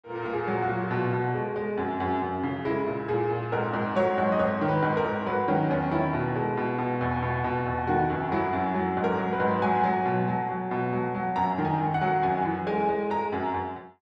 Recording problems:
none

